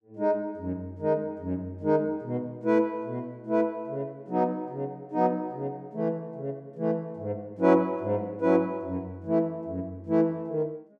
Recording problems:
none

